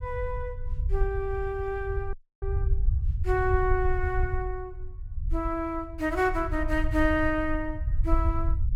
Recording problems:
low-frequency rumble; below 74 Hz, SNR 2 dB
audio cutting out; at 2 s

